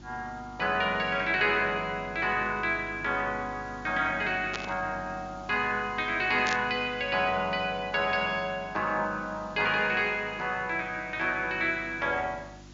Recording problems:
treble cut off; nothing above 7.3 kHz
electrical hum; 50 Hz, harmonics up to 350 Hz, SNR 21 dB
background hiss; slope -2 dB per octave, SNR 27 dB
static burst; at 4.5 s and at 6.5 s; peak -2 dB vs average level

